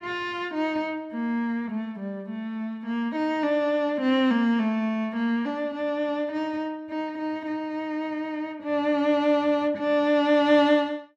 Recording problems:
none

